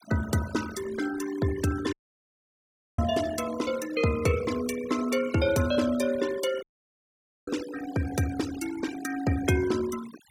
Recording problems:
denoising artefacts; signal-to-artefact ratio 13 dB
dropout; at 2 s for 1 s and at 6.5 s for 1 s

